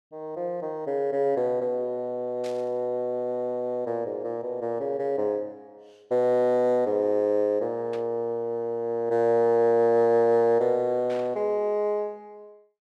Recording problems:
burst of static; at 2.5 s, at 8 s and at 11 s; peak -14 dB vs average level

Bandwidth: 12.5 kHz